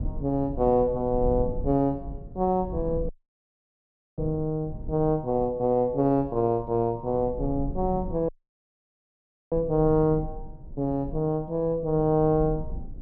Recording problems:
low-frequency rumble; below 110 Hz, SNR 13 dB
dropout; at 3 s for 1 s and at 8.5 s for 1 s

